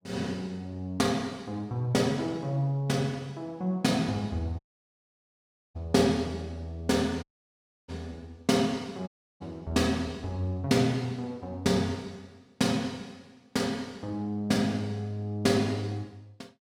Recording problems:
dropout; at 4.5 s for 1 s, at 7 s for 0.5 s and at 9 s

